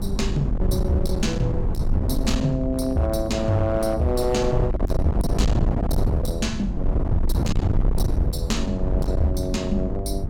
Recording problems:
distortion; hard clipping, signal-to-distortion ratio 7 dB
hum; 50 Hz, harmonics up to 350 Hz, SNR 8 dB
wind on the microphone; below 110 Hz, SNR 2 dB

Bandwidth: 17 kHz